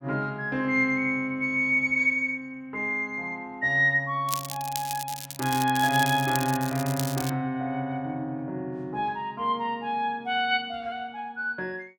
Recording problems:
crackle; from 4.5 to 7.5 s; loose cable, SNR 9 dB

